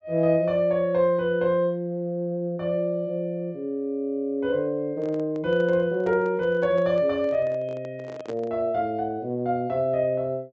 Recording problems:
treble cut off; nothing above 8 kHz
handling noise; from 5 to 8.5 s; peak -8 dB vs average level

